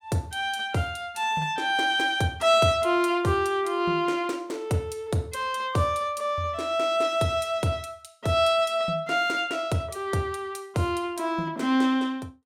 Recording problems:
none

